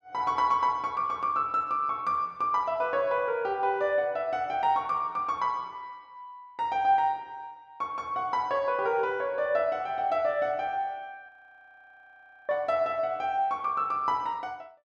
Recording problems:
frozen audio; at 11 s for 1 s

